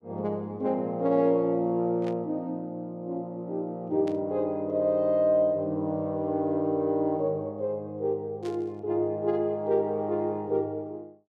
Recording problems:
static burst; at 2 s, at 4 s and at 8.5 s; peak -14 dB vs average level

